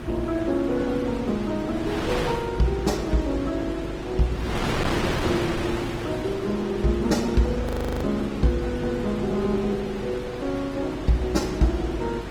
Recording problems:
lossy compression; Opus, then Opus, log-spectral distance 3 dB, nothing above 18.3 kHz
hum; 50 Hz, harmonics up to 450 Hz, SNR 14 dB
wind on the microphone; below 1.4 kHz, SNR 7 dB
audio freezing; at 7.5 s

